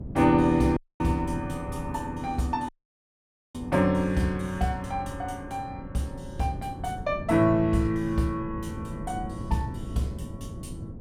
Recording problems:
wind on the microphone; below 220 Hz, SNR 11 dB
audio cutting out; at 1 s and at 2.5 s for 1 s

